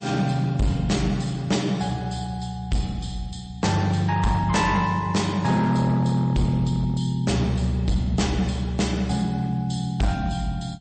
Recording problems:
lossy codec; MP3, log-spectral distance 3 dB, nothing above 8.2 kHz
distortion; hard clipping, signal-to-distortion ratio 11 dB

